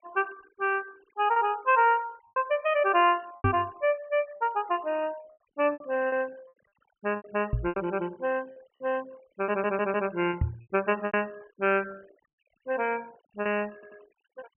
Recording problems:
treble cut off; nothing above 3 kHz
denoising artefacts; signal-to-artefact ratio 24 dB
lost packets; 6% of the sound replaced, filled with repeated pitch periods
microphone thump; at 3.5 s, at 7.5 s and at 10 s; peak +5 dB vs average level
stutter; at 9.5 s and at 14 s

